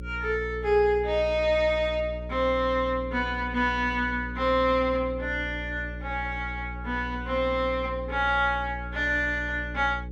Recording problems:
hum; 60 Hz, harmonics up to 540 Hz, SNR 11 dB

